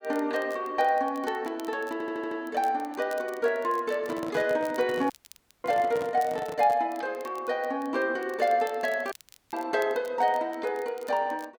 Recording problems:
crackle; vinyl, SNR 24 dB
stutter; at 2 s
handling noise; from 4 to 7 s; peak -5 dB vs average level
dropout; at 5 s for 0.5 s and at 9 s

